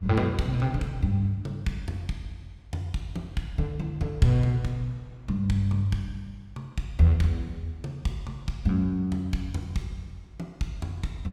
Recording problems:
wind noise; below 730 Hz, SNR 31 dB

